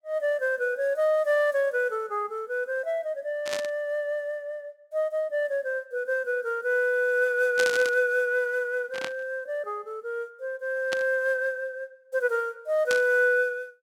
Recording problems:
static burst; 5 times, first at 3.5 s; peak 0 dB vs average level

